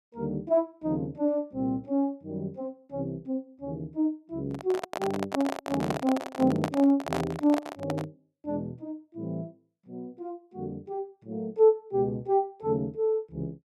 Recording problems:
microphone handling noise; from 4.5 to 8 s; peak +2 dB vs average level

